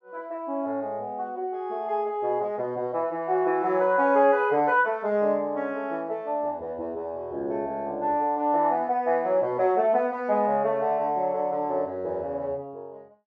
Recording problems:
none

